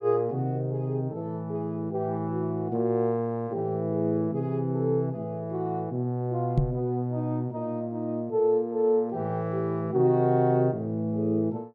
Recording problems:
microphone bump; at 6.5 s; peak +7 dB vs average level

